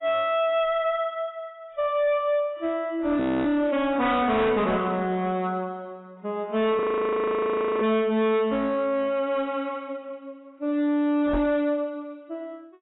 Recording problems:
lossy codec; AAC, log-spectral distance 2 dB, nothing above 3.3 kHz
distorted audio; hard clipping, signal-to-distortion ratio 10 dB
frozen audio; at 3 s and at 7 s for 1 s
microphone bump; at 11 s; peak -1 dB vs average level

